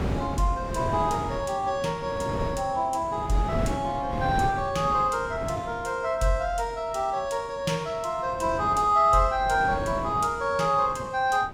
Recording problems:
wind noise; below 430 Hz, SNR 9 dB

